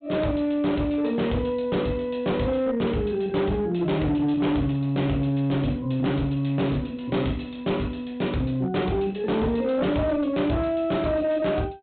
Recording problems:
treble cut off; nothing above 4 kHz
distortion; hard clipping, signal-to-distortion ratio 12 dB

